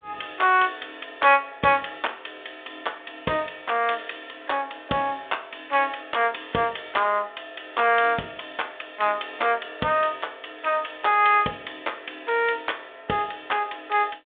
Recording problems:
phone line; 240 Hz to 3.6 kHz, G.726

